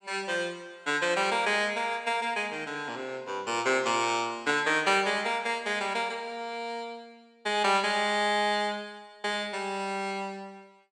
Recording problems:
none

